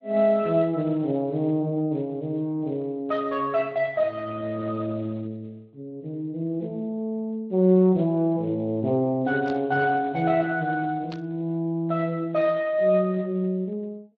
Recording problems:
codec artefacts; Speex, log-spectral distance 2 dB
static burst; at 9.5 s and at 11 s; peak -12 dB vs average level

